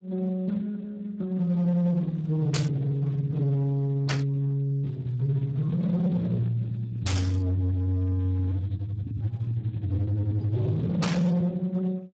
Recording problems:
codec artefacts; Speex, log-spectral distance 2 dB, nothing above 13.1 kHz
distorted audio; hard clipping, signal-to-distortion ratio 10 dB
burst of static; 4 times, first at 2.5 s; peak +2 dB vs average level

